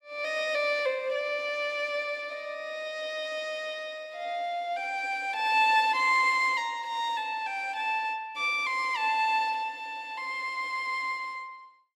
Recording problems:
none

